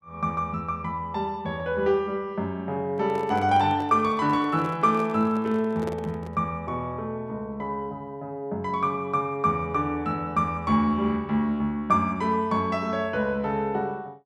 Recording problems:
handling noise; from 3 to 6.5 s; peak -5 dB vs average level

